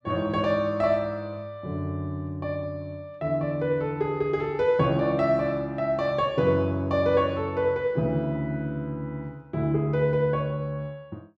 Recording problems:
none

